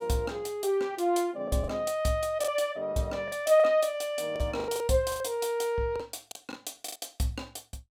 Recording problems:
lost packets; 9% of the sound replaced, filled with the last packet

